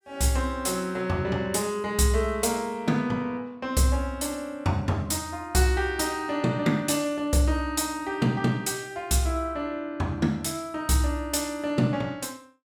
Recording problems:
none

